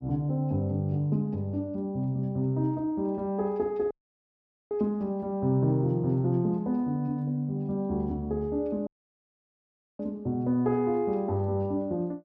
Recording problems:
audio cutting out; at 4 s for 1 s and at 9 s for 1 s

